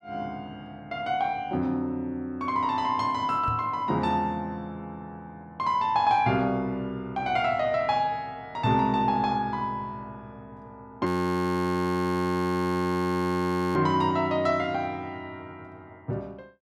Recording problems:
microphone thump; at 3.5 s; peak -4 dB vs average level
frozen audio; at 11 s for 2.5 s

